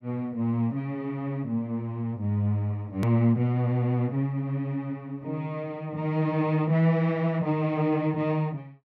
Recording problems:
edit click; at 3 s

